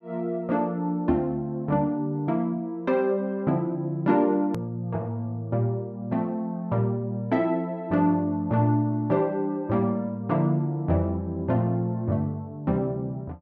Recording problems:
edit click; at 4.5 s

